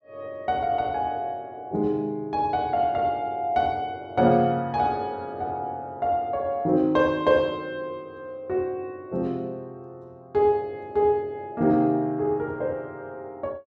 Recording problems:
none

